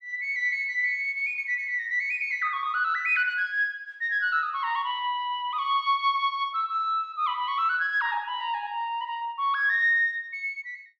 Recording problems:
none

